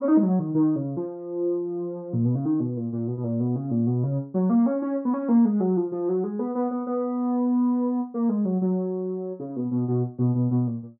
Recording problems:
none

